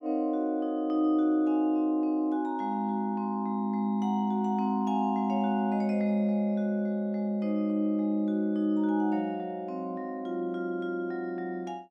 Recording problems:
none

